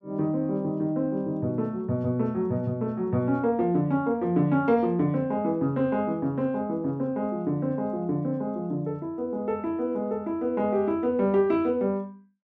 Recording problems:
none

